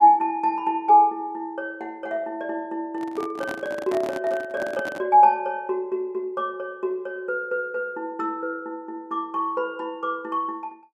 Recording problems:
handling noise; from 3 to 5 s; peak -6 dB vs average level

